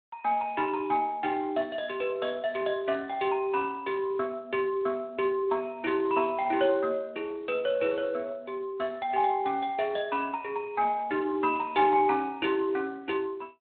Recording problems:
telephone audio; 280 Hz to 3.7 kHz, Speex

